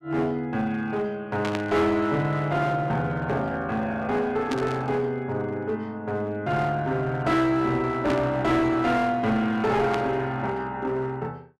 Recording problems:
distortion; hard clipping, uneven, signal-to-distortion ratio 10 dB
static burst; 4 times, first at 1.5 s; peak -3 dB vs average level

